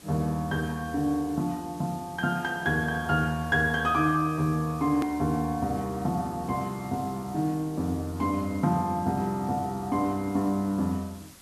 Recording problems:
hiss; slope -2 dB per octave, SNR 21 dB
hard cut with a click; at 5 s

